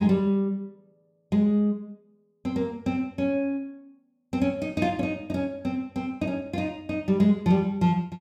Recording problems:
none

